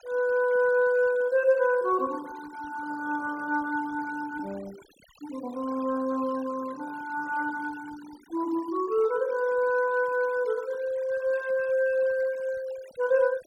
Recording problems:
noise reduction artefacts; signal-to-artefact ratio 22 dB

